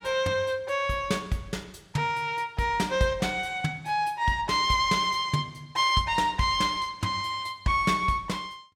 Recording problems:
none

